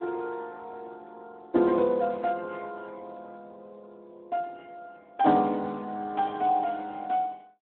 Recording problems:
phone line; 220 Hz to 4 kHz, Speex

